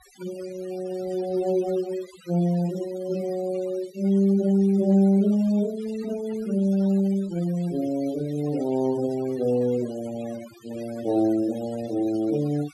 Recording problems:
noise reduction artefacts; signal-to-artefact ratio 21 dB

